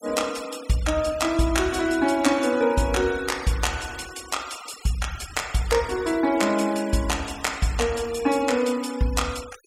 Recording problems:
denoising artefacts; signal-to-artefact ratio 16 dB

